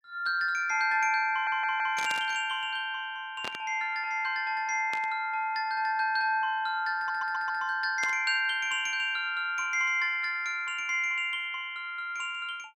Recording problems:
stutter; at 1.5 s and at 7 s
static burst; 4 times, first at 2 s; peak -4 dB vs average level

